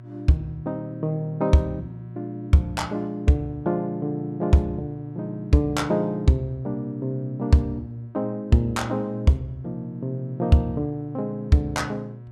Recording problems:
hum; 60 Hz, harmonics up to 720 Hz, SNR 16 dB

